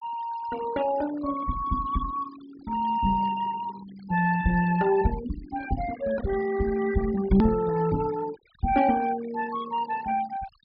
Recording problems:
low-pass filter; nothing above 5.5 kHz
noise reduction artefacts; signal-to-artefact ratio 17 dB
click at an edit; at 7.5 s

